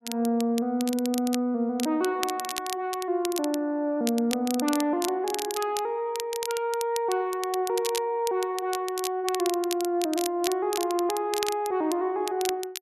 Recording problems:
crackling; vinyl, SNR 9 dB

